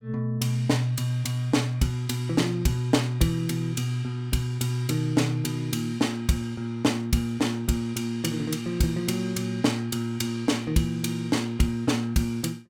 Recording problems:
none

